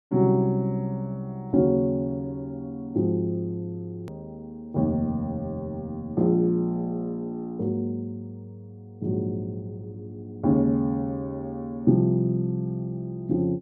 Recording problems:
edit click; at 4 s

